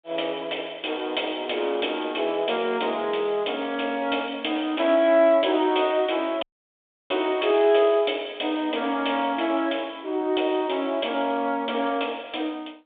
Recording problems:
telephone audio; 240 Hz to 3.6 kHz, G.726
dropout; at 6.5 s for 0.5 s

